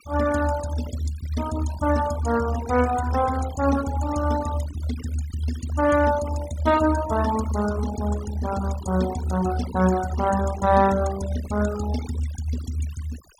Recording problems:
denoising artefacts; signal-to-artefact ratio 13 dB

